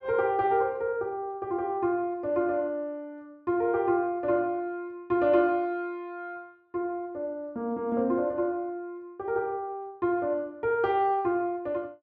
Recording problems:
none

